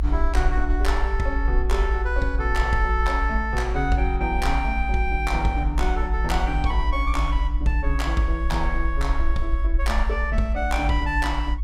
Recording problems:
rumble; below 56 Hz, SNR 0 dB

